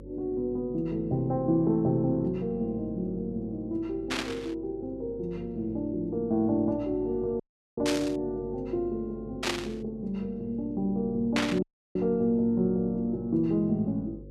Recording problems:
hum; 50 Hz, harmonics up to 550 Hz, SNR 18 dB
static burst; 4 times, first at 4 s; peak +4 dB vs average level
dropout; at 7.5 s and at 12 s

